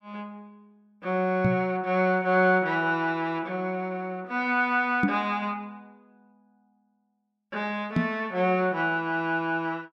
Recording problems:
knock on the microphone; at 1.5 s, at 5 s and at 8 s; peak +5 dB vs average level

